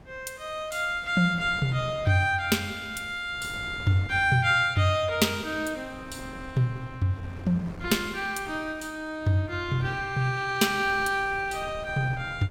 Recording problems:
wind on the microphone; below 440 Hz, SNR 19 dB

